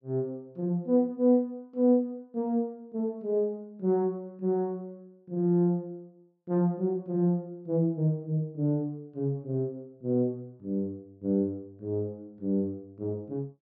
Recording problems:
none

